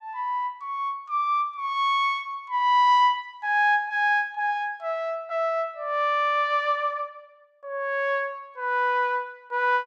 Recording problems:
none

